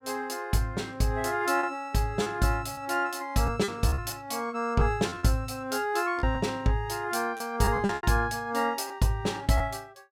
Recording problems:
packet loss; 6% of the sound replaced, filled with repeated pitch periods

